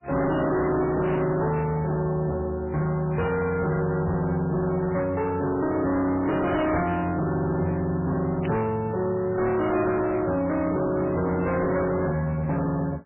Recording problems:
lossy compression; MP3, log-spectral distance 3 dB, nothing above 2.5 kHz
distorted audio; hard clipping, signal-to-distortion ratio 8 dB
burst of static; at 1.5 s and at 8.5 s; peak -9 dB vs average level

